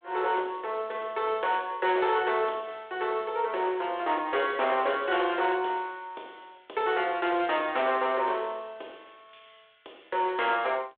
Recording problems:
phone line; 370 Hz to 3.9 kHz, G.726
distorted audio; hard clipping, uneven, signal-to-distortion ratio 13 dB

